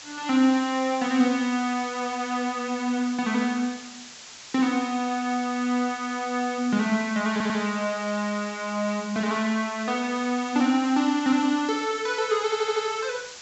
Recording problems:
treble cut off; nothing above 7.7 kHz
hiss; slope +2 dB per octave, SNR 15 dB
audio stuttering; at 7.5 s and at 12 s

